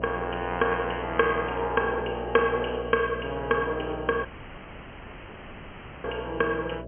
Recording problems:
low-pass filter; nothing above 3.2 kHz
hum; 60 Hz, harmonics up to 660 Hz, SNR 11 dB
audio cutting out; at 4.5 s for 2 s

